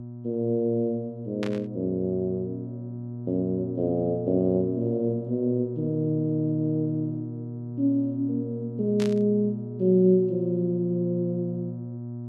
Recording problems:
hum; 60 Hz, harmonics up to 720 Hz, SNR 10 dB
static burst; at 1.5 s and at 9 s; peak -6 dB vs average level

